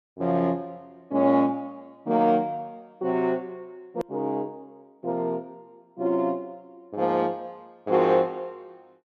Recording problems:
hard cut with a click; at 4 s

